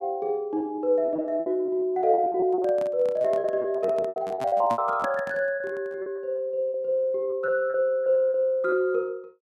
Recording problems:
lost packets; 14% of the sound replaced, filled with repeated pitch periods
microphone handling noise; from 2.5 to 6 s; peak -4 dB vs average level

